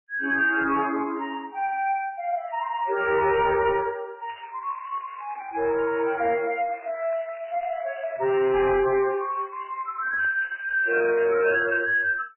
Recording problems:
codec artefacts; MP3, log-spectral distance 4 dB, nothing above 2.5 kHz
distorted audio; soft clipping, signal-to-distortion ratio 10 dB
crackle; at 3 s, from 4.5 to 6 s and from 6 to 11 s; loose cable, SNR 24 dB

